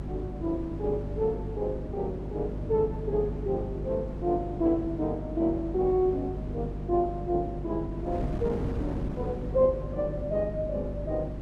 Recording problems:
electrical hum; 50 Hz, harmonics up to 400 Hz, SNR 7 dB
wind noise; below 340 Hz, SNR 9 dB

